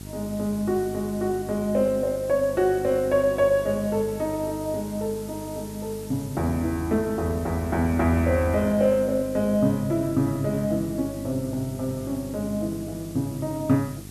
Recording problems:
hum; 50 Hz, harmonics up to 750 Hz, SNR 14 dB
hiss; slope 0 dB per octave, SNR 19 dB

